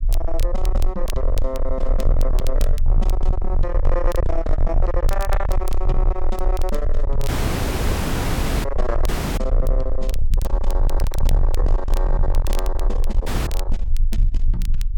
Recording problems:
distorted audio; soft clipping, signal-to-distortion ratio 6 dB
rumble; below 40 Hz, strongest tone 26 Hz, SNR -4 dB
crackling; vinyl, SNR 13 dB
audio cutting out; at 7.5 s for 1.5 s, at 9 s and at 13 s

